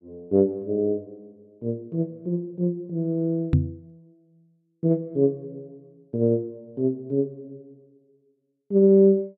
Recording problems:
knock on the microphone; at 3.5 s; peak +8 dB vs average level

